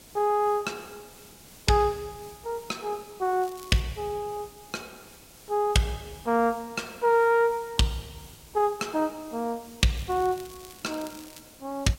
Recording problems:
codec artefacts; Opus, log-spectral distance 3 dB, nothing above 16.1 kHz
background hiss; SNR 21 dB
crackle; at 3.5 s and from 10 to 11 s; loose cable, SNR 22 dB

